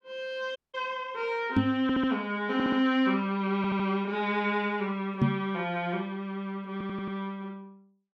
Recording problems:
dropout; at 0.5 s
microphone thump; at 1.5 s and at 5 s; peak +8 dB vs average level
audio stuttering; 4 times, first at 2 s

